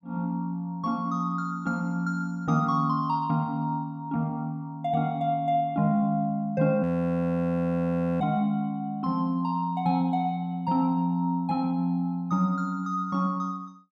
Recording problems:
frozen audio; at 7 s for 1.5 s

